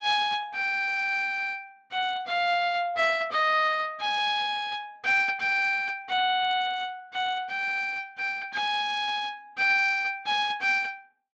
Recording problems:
codec artefacts; Speex, log-spectral distance 3 dB, nothing above 7.3 kHz

